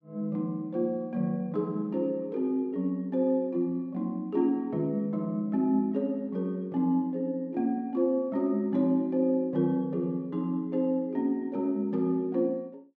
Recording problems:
none

